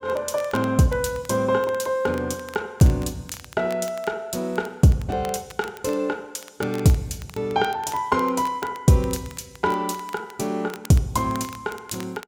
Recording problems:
crackle; vinyl, SNR 21 dB

